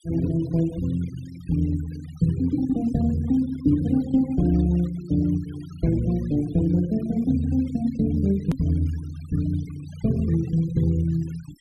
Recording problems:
denoising artefacts; signal-to-artefact ratio 24 dB
hard cut with a click; at 8.5 s

